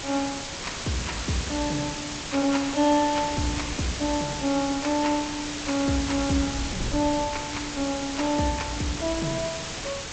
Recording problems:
lossy compression; G.722, log-spectral distance 17 dB, nothing above 8 kHz
background hiss; slope -1 dB per octave, SNR 5 dB
wind on the microphone; below 180 Hz, SNR 16 dB

